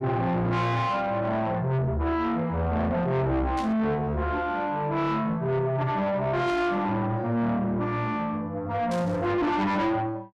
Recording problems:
distorted audio; soft clipping, signal-to-distortion ratio 7 dB
burst of static; at 3.5 s, at 6.5 s and at 9 s; peak -9 dB vs average level

